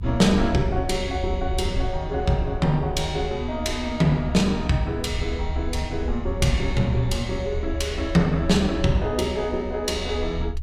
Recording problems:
low-frequency rumble; below 72 Hz, SNR 7 dB

